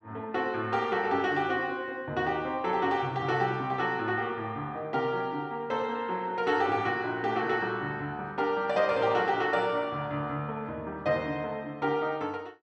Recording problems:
none

